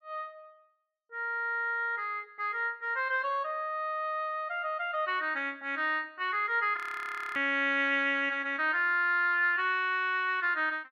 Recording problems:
frozen audio; at 7 s for 0.5 s

